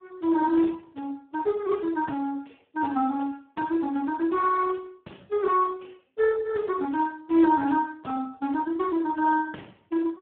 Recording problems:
phone line; 220 Hz to 3.4 kHz, Speex

